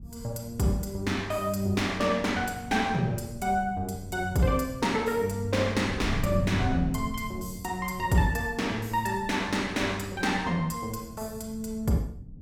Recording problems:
wind on the microphone; below 150 Hz, SNR 12 dB

